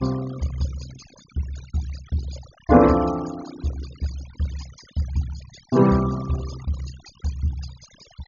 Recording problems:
low-pass filter; nothing above 6.9 kHz
noise reduction artefacts; signal-to-artefact ratio 17 dB

